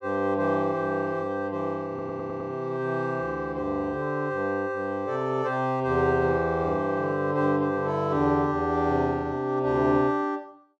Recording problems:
stutter; at 2 s

